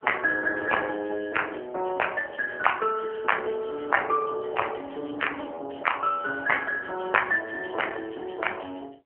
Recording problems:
telephone audio; 300 Hz to 3 kHz, AMR-NB

